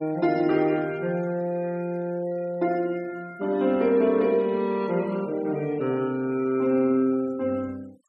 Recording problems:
noise reduction artefacts; signal-to-artefact ratio 25 dB

